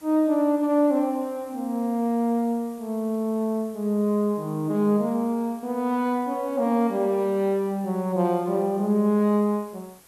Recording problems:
hiss; slope -3 dB per octave, SNR 27 dB

